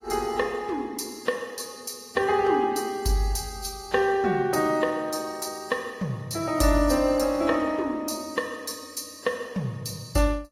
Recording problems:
codec artefacts; AAC, log-spectral distance 4 dB, nothing above 14.7 kHz

